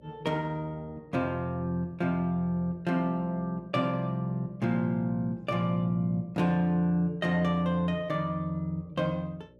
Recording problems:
hum; 60 Hz, harmonics up to 600 Hz, SNR 28 dB

